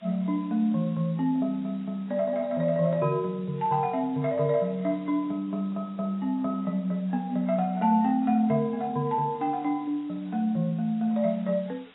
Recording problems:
codec artefacts; AAC, log-spectral distance 3 dB
hiss; SNR 30 dB

